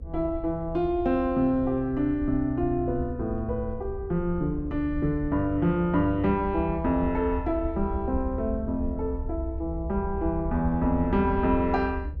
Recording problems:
low-frequency rumble; below 72 Hz, SNR 9 dB

